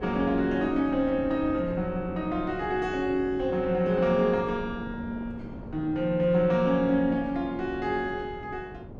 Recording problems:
wind on the microphone; below 370 Hz, SNR 14 dB

